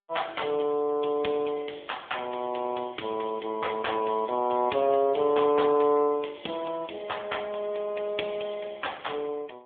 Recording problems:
phone line; 220 Hz to 3.5 kHz, AMR-NB

